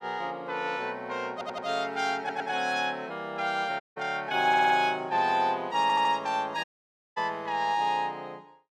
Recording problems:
stutter; 4 times, first at 1.5 s
dropout; at 4 s and at 6.5 s for 0.5 s

